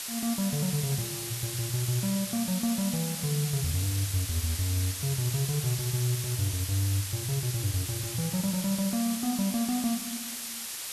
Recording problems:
background hiss; slope +3 dB per octave, SNR 3 dB

